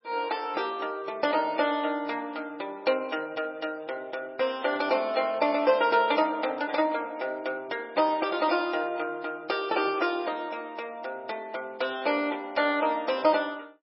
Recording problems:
lossy codec; MP3, log-spectral distance 3 dB, nothing above 5.5 kHz

